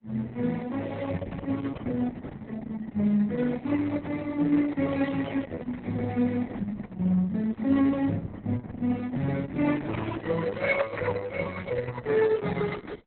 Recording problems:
lossy codec; Opus, then Opus, log-spectral distance 4 dB, nothing above 4 kHz

